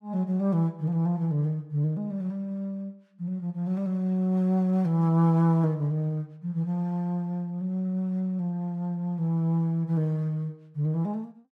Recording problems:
none

